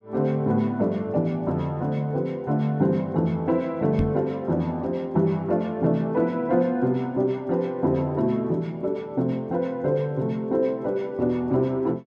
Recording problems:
knock on the microphone; at 4 s; peak +2 dB vs average level

